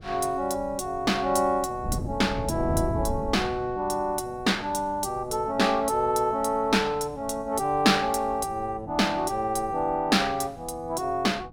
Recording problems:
wind noise; below 210 Hz, SNR 13 dB

